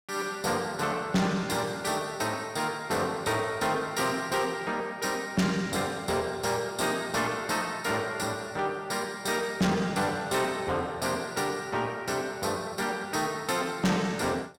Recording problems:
distorted audio; soft clipping, signal-to-distortion ratio 10 dB

